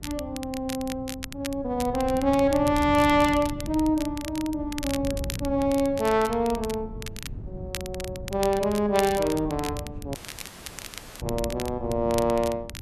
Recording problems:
wind noise; below 160 Hz, SNR 13 dB
crackle; vinyl, SNR 14 dB
dropout; at 10 s for 1 s

